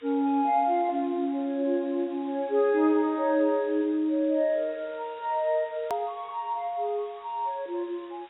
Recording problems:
lossy codec; AAC, log-spectral distance 5 dB, nothing above 18.3 kHz
hiss; SNR 27 dB
click at an edit; at 6 s

